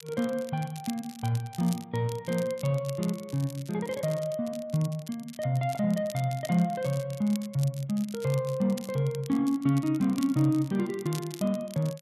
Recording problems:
crackle; vinyl, SNR 18 dB

